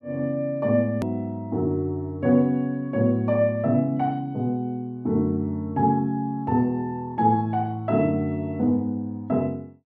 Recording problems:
hard cut with a click; at 1 s

